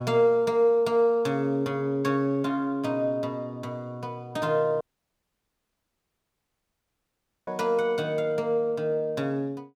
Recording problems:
dropout; at 5 s for 2.5 s

